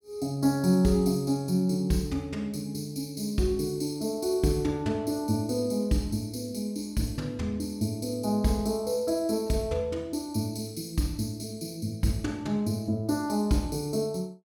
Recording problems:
none

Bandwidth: 17 kHz